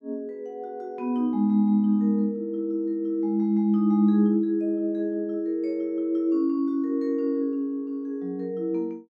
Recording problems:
none

